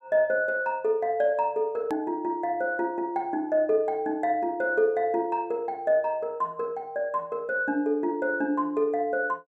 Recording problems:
hard cut with a click; at 2 s

